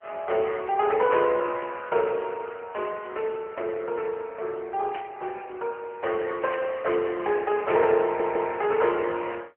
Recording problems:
phone line; 300 Hz to 3.1 kHz, AMR-NB
burst of static; at 5 s and at 6.5 s; peak -8 dB vs average level
audio stuttering; at 8 s

